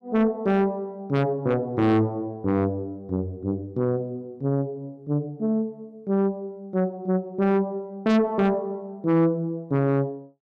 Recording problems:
distortion; soft clipping, signal-to-distortion ratio 8 dB

